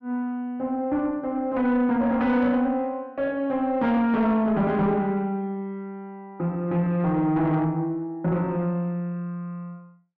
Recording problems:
distortion; soft clipping, signal-to-distortion ratio 11 dB

